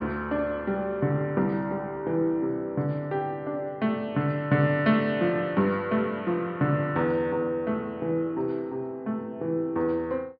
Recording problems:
treble cut off; nothing above 5.3 kHz

